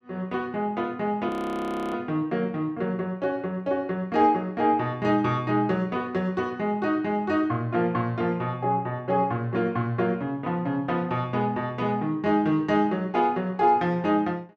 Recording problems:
audio freezing; at 1.5 s for 0.5 s

